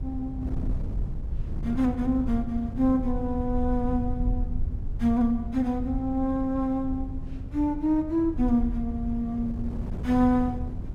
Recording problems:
low-frequency rumble; below 72 Hz, SNR 9 dB
wind on the microphone; below 150 Hz, SNR 11 dB

